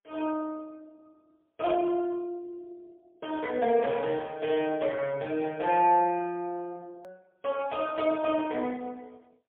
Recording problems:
telephone audio; 220 Hz to 3.4 kHz, AMR-NB, then MP3
click at an edit; at 7 s

